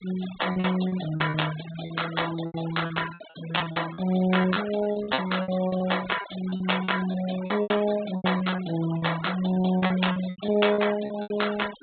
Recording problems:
treble missing; nothing above 4 kHz
denoising artefacts; signal-to-artefact ratio 13 dB
lost packets; 16% of the sound replaced, filled with repeated pitch periods

